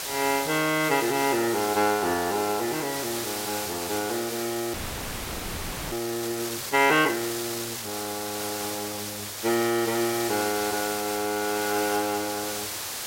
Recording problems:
background hiss; slope 0 dB per octave, SNR 5 dB
audio freezing; at 4.5 s for 1 s

